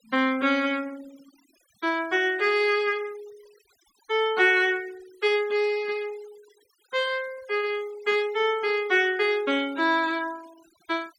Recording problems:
denoising artefacts; signal-to-artefact ratio 25 dB

